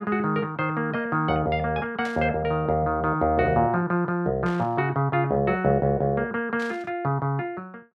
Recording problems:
burst of static; at 2 s, at 4.5 s and at 6.5 s; peak -12 dB vs average level

